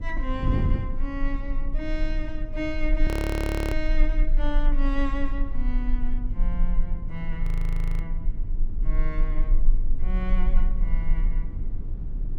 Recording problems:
low-frequency rumble; below 34 Hz, strongest tone 24 Hz, SNR -5 dB
wind noise; below 120 Hz, SNR 2 dB
frozen audio; at 3 s for 0.5 s and at 7.5 s for 0.5 s

